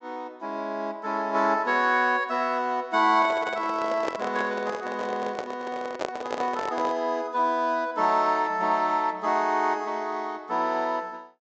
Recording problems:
treble cut off; nothing above 8 kHz
handling noise; from 3 to 7 s; peak 0 dB vs average level

